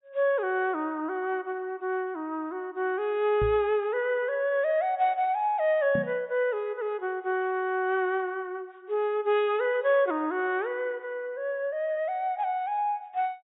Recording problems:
treble missing; nothing above 4 kHz
microphone thump; at 3.5 s and at 6 s; peak -1 dB vs average level

